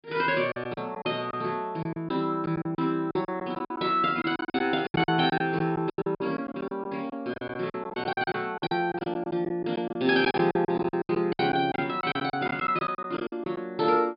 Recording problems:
low-pass filter; nothing above 5.1 kHz
lost packets; 16% of the sound replaced, filled with silence

